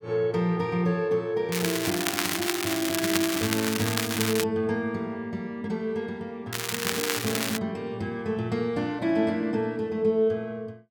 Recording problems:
crackle; from 1.5 to 4.5 s and from 6.5 to 7.5 s; loose cable, SNR 1 dB

